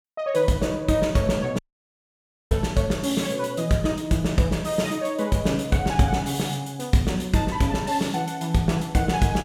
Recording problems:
dropout; at 1.5 s for 1 s

